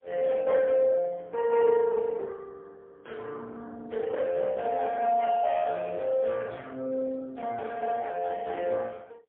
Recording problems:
telephone audio; 170 Hz to 3.4 kHz, AMR-NB, then MP3

